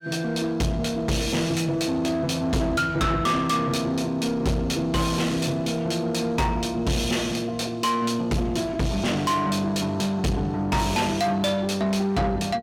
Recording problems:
distortion; soft clipping, signal-to-distortion ratio 8 dB

